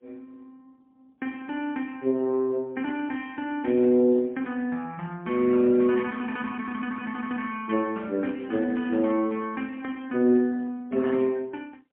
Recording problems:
phone line; 260 Hz to 3.2 kHz, AMR-NB, then MP3

